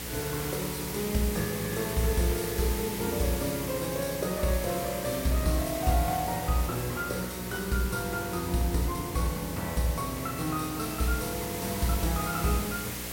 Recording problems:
hum; 60 Hz, harmonics up to 540 Hz, SNR 12 dB
hiss; slope -1 dB per octave, SNR 6 dB

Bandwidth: 16.5 kHz